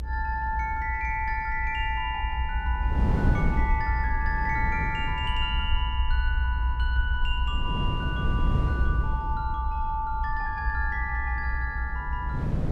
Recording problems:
rumble; below 62 Hz, SNR 0 dB
wind noise; below 200 Hz, SNR 2 dB

